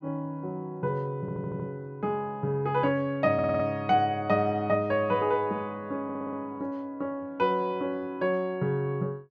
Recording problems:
audio stuttering; at 1 s, at 3.5 s and at 6 s

